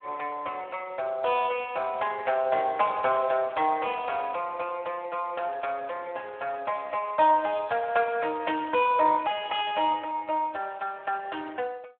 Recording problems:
phone line; 340 Hz to 3.6 kHz, Speex

